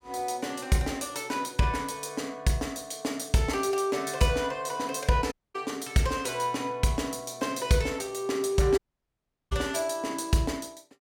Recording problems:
dropout; at 5.5 s and at 9 s for 0.5 s

